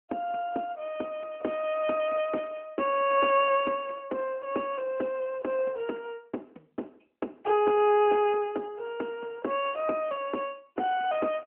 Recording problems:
telephone audio; 220 Hz to 3.3 kHz, AMR-NB

